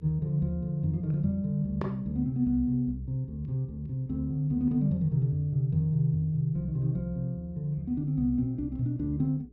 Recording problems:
hum; 60 Hz, harmonics up to 420 Hz, SNR 26 dB

